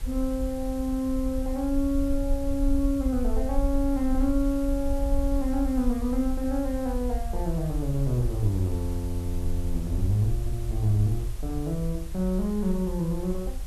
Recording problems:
background hiss; slope -3 dB per octave, SNR 19 dB
low-frequency rumble; below 54 Hz, SNR 5 dB

